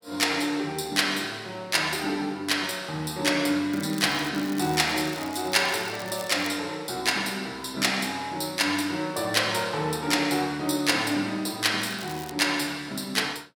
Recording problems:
crackling; from 3.5 to 6.5 s and at 12 s; loose cable, SNR 17 dB

